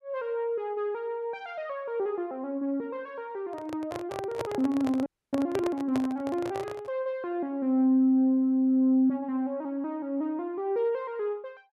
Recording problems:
microphone handling noise; from 3.5 to 7 s; peak -1 dB vs average level
frozen audio; at 5 s

